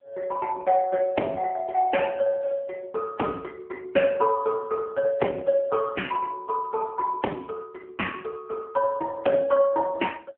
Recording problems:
phone line; 260 Hz to 3.5 kHz, AMR-NB

